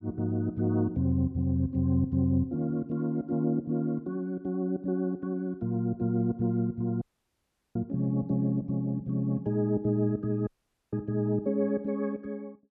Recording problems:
audio cutting out; at 7 s for 0.5 s and at 10 s

